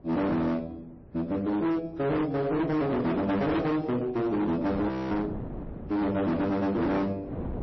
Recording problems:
lossy codec; AAC, then MP3, log-spectral distance 2 dB, nothing above 5.8 kHz
distortion; hard clipping, signal-to-distortion ratio 6 dB
wind noise; below 430 Hz, SNR 15 dB
audio freezing; at 5 s

